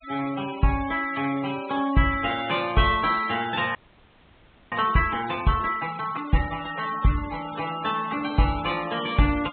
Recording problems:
treble missing; nothing above 4 kHz
noise reduction artefacts; signal-to-artefact ratio 15 dB
frozen audio; at 4 s for 1 s

